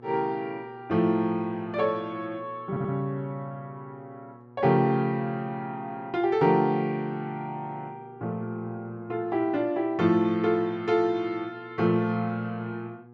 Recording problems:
electrical hum; 60 Hz, harmonics up to 1.3 kHz, SNR 22 dB
audio stuttering; at 2.5 s

